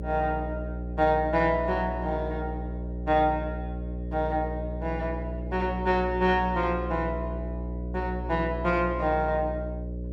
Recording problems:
electrical hum; 60 Hz, harmonics up to 600 Hz, SNR 6 dB

